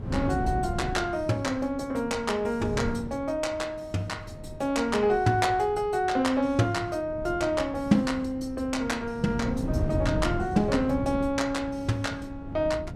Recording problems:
wind on the microphone; below 230 Hz, SNR 9 dB

